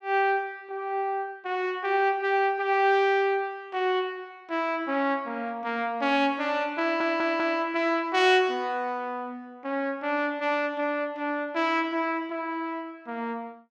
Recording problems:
audio stuttering; at 7 s

